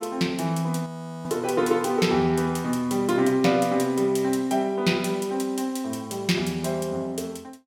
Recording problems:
frozen audio; at 1 s

